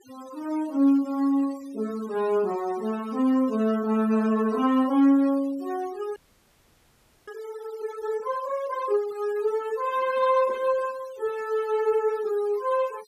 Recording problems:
noise reduction artefacts; signal-to-artefact ratio 22 dB
audio freezing; at 6 s for 1 s

